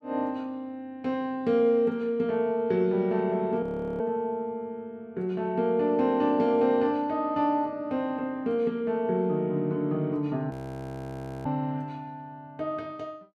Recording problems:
audio freezing; at 3.5 s and at 11 s for 1 s

